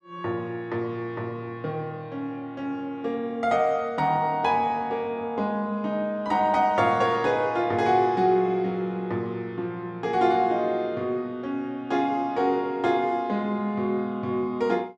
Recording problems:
none

